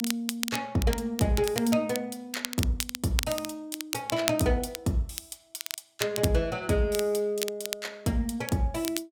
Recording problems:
crackling; vinyl, SNR 7 dB

